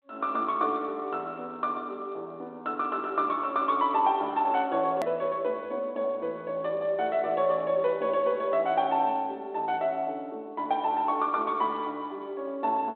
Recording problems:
phone line; 240 Hz to 4 kHz, G.726
hard cut with a click; at 5 s

